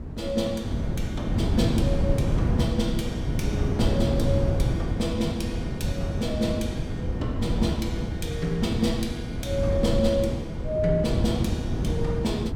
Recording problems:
wind noise; below 210 Hz, SNR -1 dB

